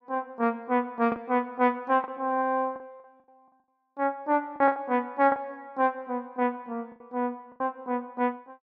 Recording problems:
lost packets; 5% of the sound replaced, filled with the last packet

